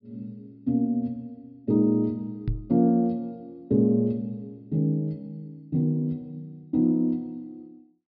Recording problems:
treble cut off; nothing above 5.5 kHz
microphone bump; at 2.5 s; peak +1 dB vs average level

